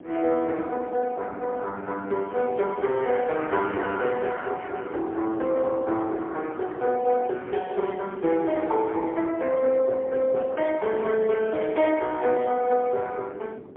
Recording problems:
telephone audio; 260 Hz to 3.5 kHz, AMR-NB, then MP3
wind noise; below 420 Hz, SNR 18 dB

